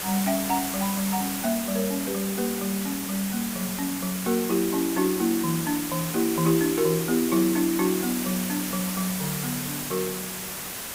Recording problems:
hiss; slope -1 dB per octave, SNR 4 dB

